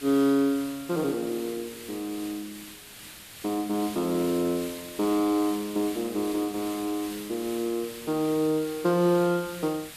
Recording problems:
hiss; SNR 13 dB

